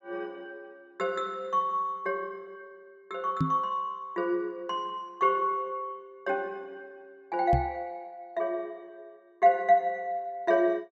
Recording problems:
knock on the microphone; at 3.5 s and at 7.5 s; peak +5 dB vs average level

